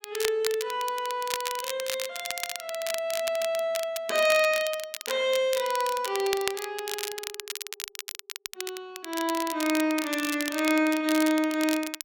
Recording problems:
crackle; vinyl, SNR 8 dB

